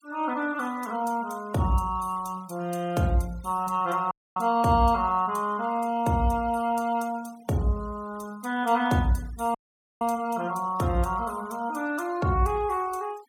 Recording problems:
denoising artefacts; signal-to-artefact ratio 23 dB
audio cutting out; at 4 s and at 9.5 s

